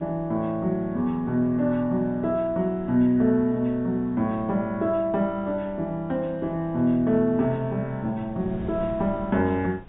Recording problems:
treble missing; nothing above 4 kHz
wind noise; below 280 Hz, SNR 20 dB

